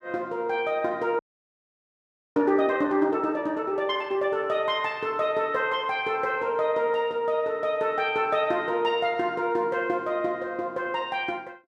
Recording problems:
frozen audio; at 1 s for 1 s

